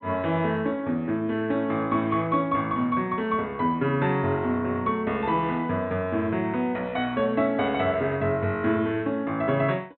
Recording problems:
low-pass filter; nothing above 4.1 kHz

